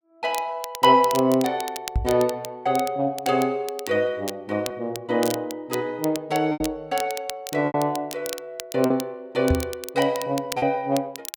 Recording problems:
crackling; vinyl, SNR 13 dB
packet loss; 3% of the sound replaced, filled with repeated pitch periods
knock on the microphone; at 2 s, at 6.5 s and at 9.5 s; peak +4 dB vs average level

